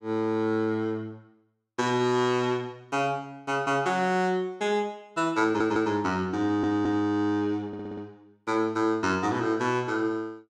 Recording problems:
stutter; at 5.5 s, at 6.5 s and at 7.5 s

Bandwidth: 15 kHz